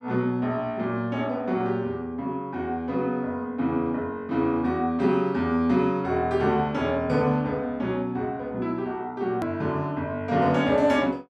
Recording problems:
hard cut with a click; at 9.5 s

